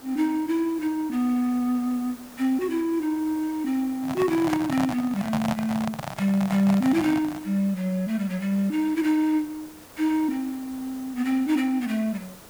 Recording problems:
background hiss; slope -4 dB per octave, SNR 20 dB
handling noise; from 4 to 7.5 s; peak 0 dB vs average level

